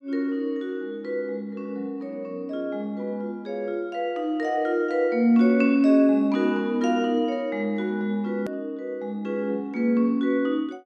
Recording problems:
click at an edit; at 8.5 s

